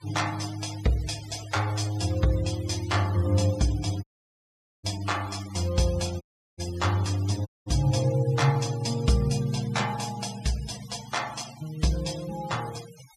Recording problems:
denoising artefacts; signal-to-artefact ratio 16 dB
audio cutting out; at 4 s for 1 s, at 6 s and at 7.5 s

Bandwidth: 14.5 kHz